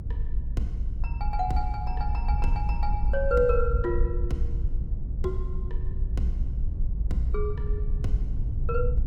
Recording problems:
rumble; below 62 Hz, SNR -2 dB

